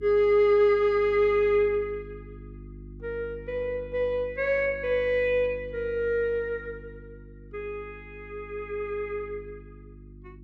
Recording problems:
mains hum; 50 Hz, harmonics up to 350 Hz, SNR 20 dB

